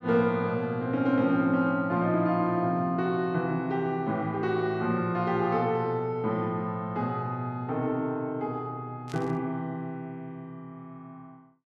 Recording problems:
static burst; at 9 s; peak -13 dB vs average level

